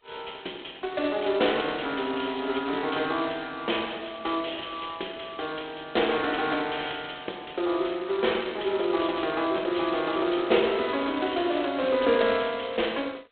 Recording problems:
telephone audio; 300 Hz to 3.7 kHz, G.726

